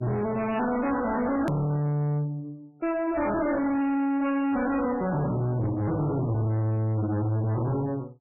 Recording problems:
lossy codec; MP3, log-spectral distance 3 dB, nothing above 13.1 kHz
distortion; soft clipping, signal-to-distortion ratio 6 dB
hard cut with a click; at 1.5 s

